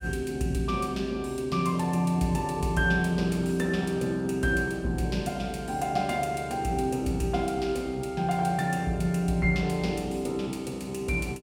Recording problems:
none

